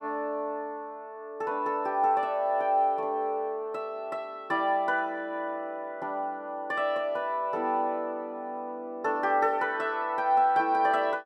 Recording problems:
none

